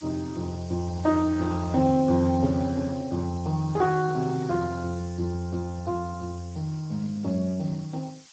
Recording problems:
lossy codec; Speex, log-spectral distance 7 dB
hiss; slope +4 dB per octave, SNR 23 dB

